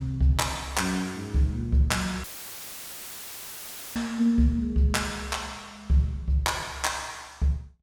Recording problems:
dropout; at 2 s for 1.5 s; filled with static

